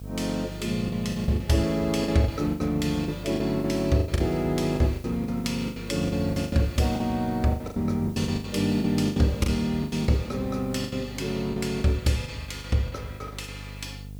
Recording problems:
electrical hum; 50 Hz, harmonics up to 500 Hz, SNR 14 dB
hiss; slope +4 dB per octave, SNR 26 dB
lost packets; 15% of the sound replaced, filled with the last packet

